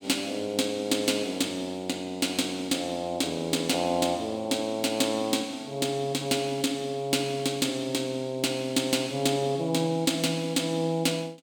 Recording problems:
none

